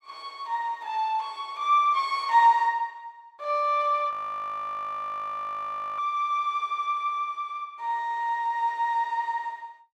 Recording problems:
frozen audio; at 4 s for 2 s

